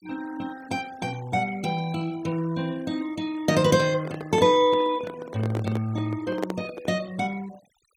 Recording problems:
noise reduction artefacts; signal-to-artefact ratio 22 dB
handling noise; from 4 to 7 s; peak +1 dB vs average level

